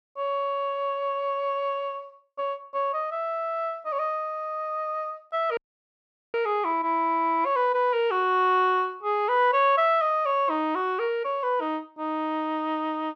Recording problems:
dropout; at 5.5 s for 1 s

